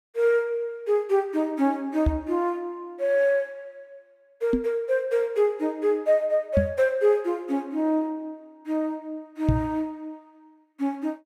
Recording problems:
microphone bump; 4 times, first at 2 s; peak +7 dB vs average level

